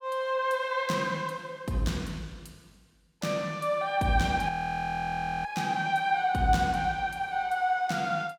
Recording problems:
frozen audio; at 4.5 s for 1 s

